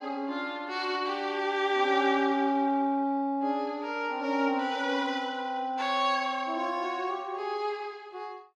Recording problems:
none

